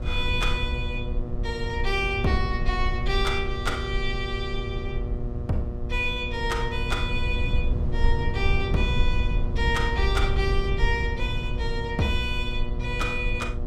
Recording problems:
hum; 60 Hz, harmonics up to 1.3 kHz, SNR 9 dB
rumble; below 78 Hz, SNR 1 dB

